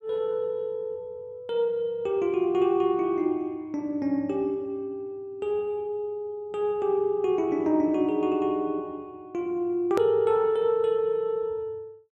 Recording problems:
click at an edit; at 10 s

